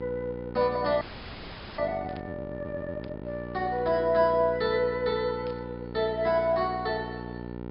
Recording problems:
treble cut off; nothing above 5.5 kHz
hum; 60 Hz, harmonics up to 1.5 kHz, SNR 11 dB
audio freezing; at 1 s for 1 s
static burst; at 2 s, at 3 s and at 5.5 s; peak -16 dB vs average level

